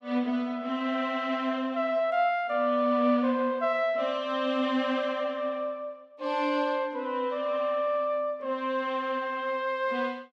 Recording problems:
none

